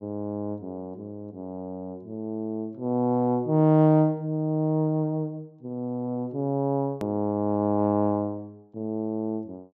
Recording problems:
treble missing; nothing above 8 kHz
click at an edit; at 7 s

